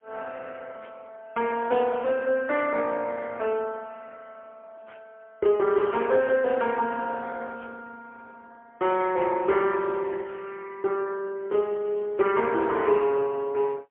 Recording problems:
telephone audio; 300 Hz to 3.3 kHz, AMR-NB, then MP3

